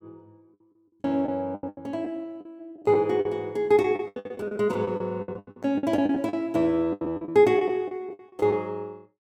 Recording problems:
lost packets; 17% of the sound replaced, filled with the last packet

